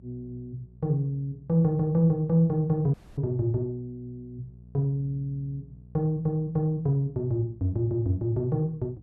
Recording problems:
electrical hum; 60 Hz, harmonics up to 420 Hz, SNR 23 dB
dropout; at 3 s

